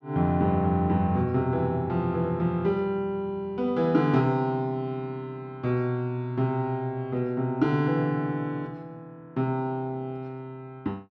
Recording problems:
none

